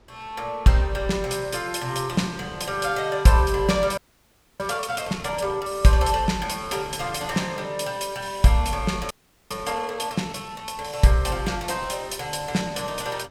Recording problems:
wind on the microphone; below 760 Hz, SNR 23 dB
audio freezing; at 4 s for 0.5 s and at 9 s

